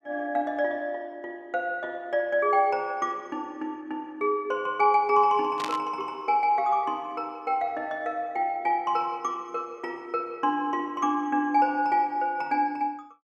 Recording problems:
burst of static; at 5.5 s; peak -3 dB vs average level

